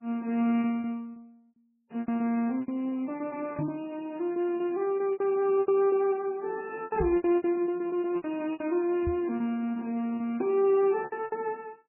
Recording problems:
lossy compression; MP3, log-spectral distance 2 dB, nothing above 2.8 kHz
lost packets; 16% of the sound replaced, filled with repeated pitch periods
microphone bump; at 3.5 s, at 7 s and at 9 s; peak -1 dB vs average level

